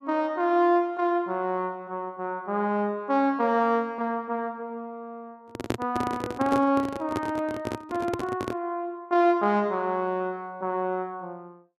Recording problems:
handling noise; from 5.5 to 8.5 s; peak +3 dB vs average level

